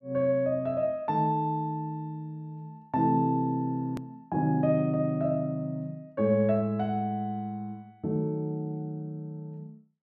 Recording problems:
click at an edit; at 4 s

